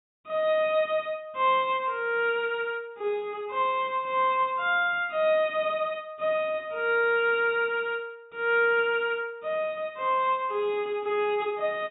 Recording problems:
treble cut off; nothing above 4 kHz

